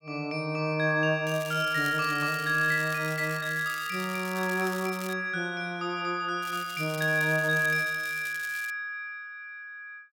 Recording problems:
crackle; from 1.5 to 5 s and from 6.5 to 8.5 s; loose cable, SNR 15 dB

